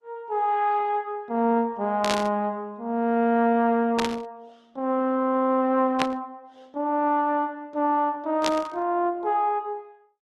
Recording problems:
codec artefacts; Opus, log-spectral distance 2 dB
burst of static; 4 times, first at 2 s; peak +2 dB vs average level

